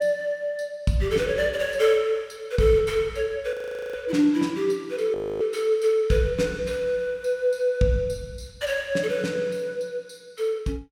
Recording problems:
audio freezing; at 3.5 s and at 5 s

